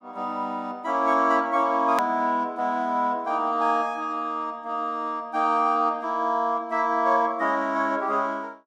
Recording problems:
click at an edit; at 2 s

